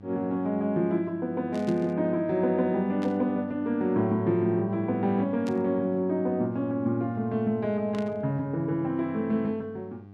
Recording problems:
mains hum; 50 Hz, harmonics up to 1.2 kHz, SNR 20 dB
burst of static; 4 times, first at 1.5 s; peak -12 dB vs average level

